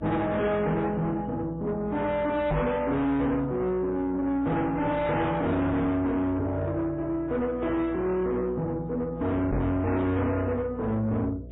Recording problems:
lossy codec; MP3, then AAC, log-spectral distance 2 dB, nothing above 3.6 kHz
distorted audio; soft clipping, signal-to-distortion ratio 6 dB
electrical hum; 60 Hz, harmonics up to 660 Hz, SNR 18 dB
microphone bump; at 2.5 s and at 9.5 s; peak +5 dB vs average level

